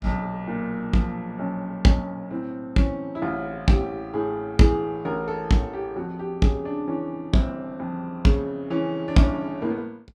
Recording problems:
none

